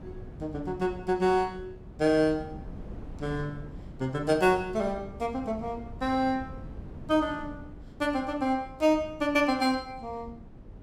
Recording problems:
wind noise; below 230 Hz, SNR 16 dB

